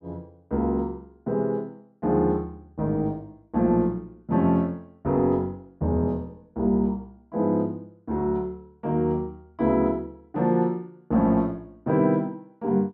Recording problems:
none

